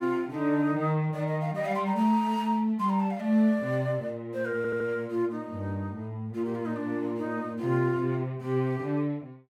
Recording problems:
stutter; at 4.5 s

